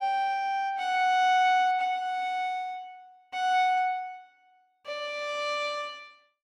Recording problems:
none

